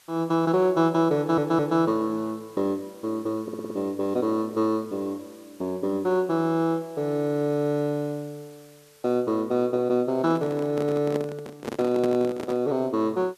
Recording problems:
background hiss; slope +1 dB per octave, SNR 29 dB
stutter; at 1 s and at 3.5 s
handling noise; from 10 to 13 s; peak -2 dB vs average level

